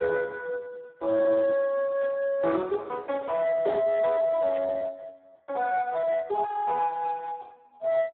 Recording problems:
phone line; 280 Hz to 2 kHz, Speex
burst of static; at 2 s and at 4.5 s; peak -17 dB vs average level

